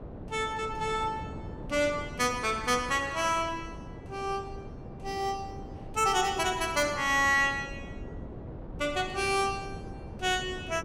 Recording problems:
wind on the microphone; below 380 Hz, SNR 13 dB

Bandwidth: 16 kHz